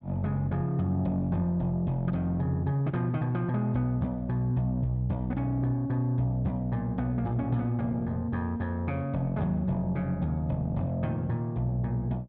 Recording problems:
treble missing; nothing above 7 kHz

